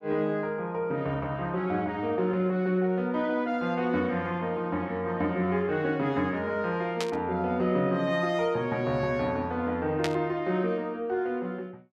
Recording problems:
burst of static; at 7 s and at 10 s; peak +1 dB vs average level

